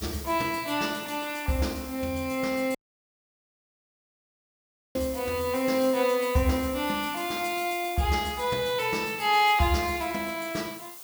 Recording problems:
background hiss; SNR 13 dB
dropout; at 3 s for 2 s

